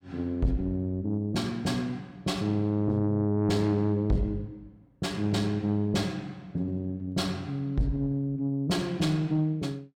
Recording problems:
distorted audio; soft clipping, signal-to-distortion ratio 10 dB

